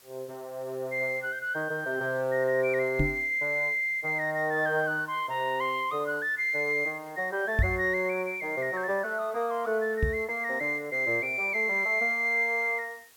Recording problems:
hiss; slope 0 dB per octave, SNR 27 dB
microphone bump; at 3 s, at 7.5 s and at 10 s; peak +5 dB vs average level

